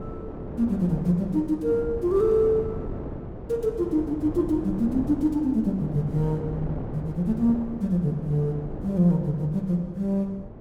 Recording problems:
wind noise; below 380 Hz, SNR 11 dB

